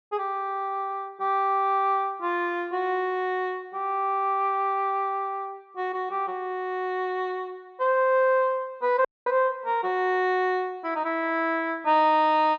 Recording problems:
audio cutting out; at 9 s

